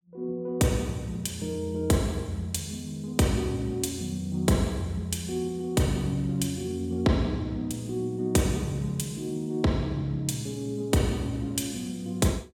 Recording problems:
none

